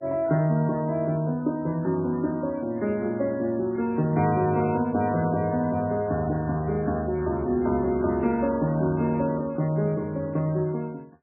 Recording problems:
lossy compression; MP3, log-spectral distance 2 dB, nothing above 2.4 kHz

